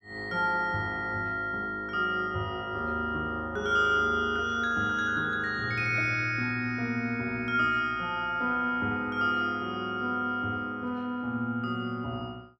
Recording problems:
none

